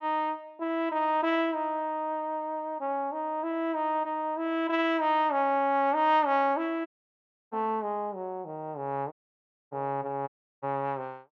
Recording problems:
dropout; at 7 s for 0.5 s, at 9 s for 0.5 s and at 10 s

